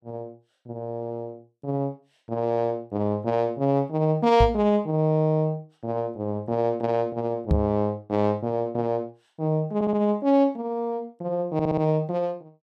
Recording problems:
knock on the microphone; at 4.5 s and at 7.5 s; peak +6 dB vs average level
audio stuttering; at 10 s and at 12 s

